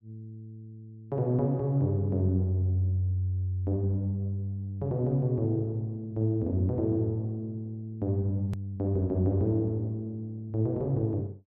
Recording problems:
edit click; at 8.5 s

